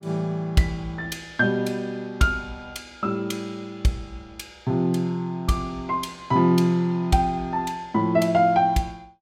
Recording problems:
none

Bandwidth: 16.5 kHz